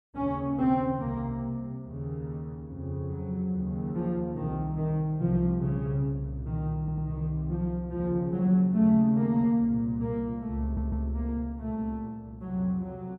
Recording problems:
audio stuttering; at 7 s and at 11 s

